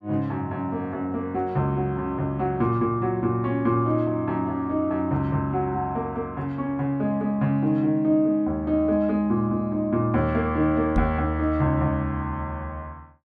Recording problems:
microphone bump; at 11 s; peak +2 dB vs average level

